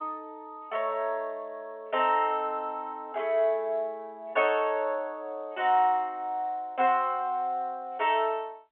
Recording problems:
phone line; 260 Hz to 3.3 kHz, G.711

